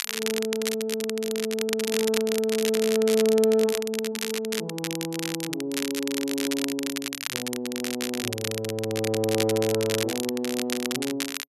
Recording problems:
crackling; vinyl, SNR 4 dB

